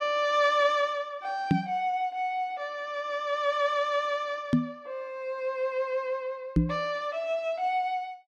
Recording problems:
microphone bump; at 1.5 s, at 4.5 s and at 6.5 s; peak +9 dB vs average level

